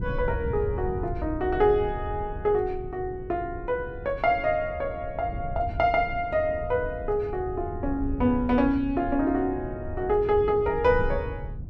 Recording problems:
wind noise; below 110 Hz, SNR 10 dB

